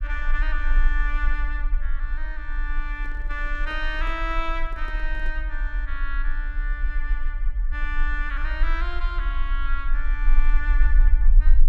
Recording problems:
low-frequency rumble; below 38 Hz, strongest tone 18 Hz, SNR -5 dB
microphone handling noise; from 3 to 5.5 s; peak -9 dB vs average level

